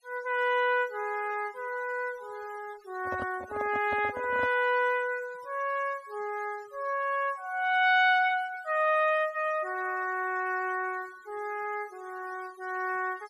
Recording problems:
denoising artefacts; signal-to-artefact ratio 22 dB
handling noise; from 3 to 4.5 s; peak -5 dB vs average level

